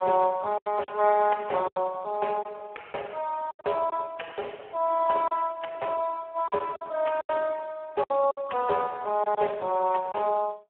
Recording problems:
telephone audio; 340 Hz to 2.8 kHz, Speex
lost packets; 7% of the sound replaced, filled with silence

